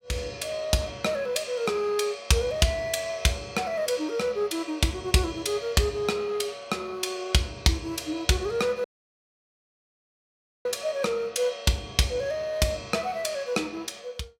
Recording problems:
dropout; at 9 s for 2 s

